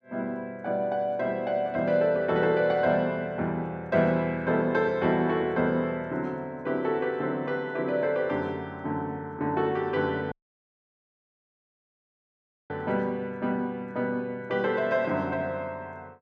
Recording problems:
audio cutting out; at 10 s for 2.5 s

